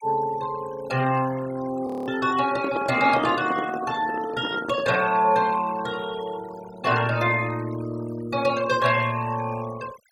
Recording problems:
denoising artefacts; signal-to-artefact ratio 16 dB
frozen audio; at 2 s
handling noise; from 2.5 to 5 s; peak -1 dB vs average level

